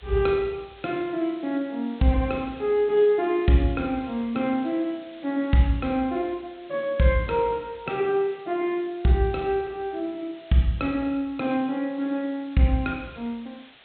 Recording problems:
low-pass filter; nothing above 4 kHz
background hiss; SNR 25 dB

